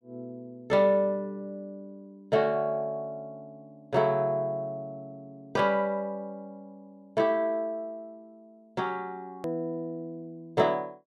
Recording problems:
click at an edit; at 9.5 s

